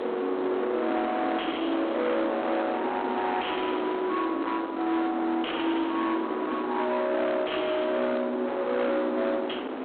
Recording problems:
phone line; 240 Hz to 2.8 kHz, G.726
distortion; soft clipping, signal-to-distortion ratio 6 dB
wind on the microphone; below 1.1 kHz, SNR 6 dB

